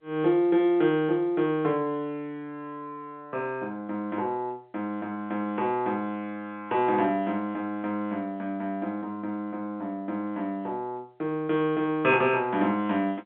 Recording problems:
telephone audio; 240 Hz to 3.4 kHz, G.711

